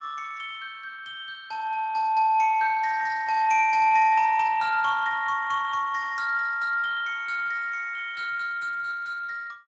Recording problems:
codec artefacts; Speex, log-spectral distance 3 dB

